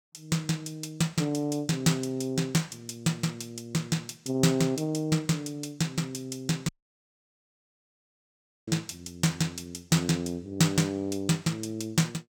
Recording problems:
dropout; at 6.5 s for 2 s

